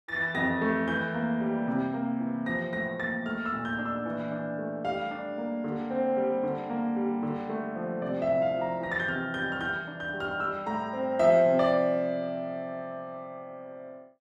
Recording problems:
none

